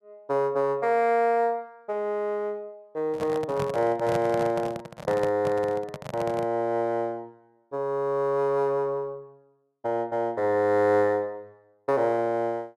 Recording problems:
microphone handling noise; from 3 to 6.5 s; peak -1 dB vs average level

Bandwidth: 13 kHz